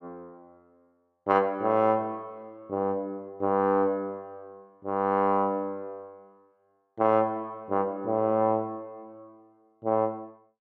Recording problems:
none

